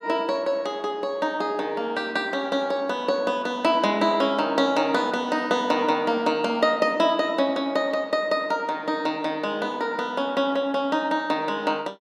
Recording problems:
none

